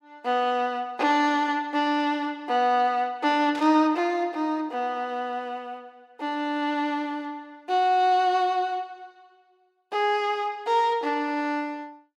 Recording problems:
burst of static; at 3.5 s; peak -10 dB vs average level

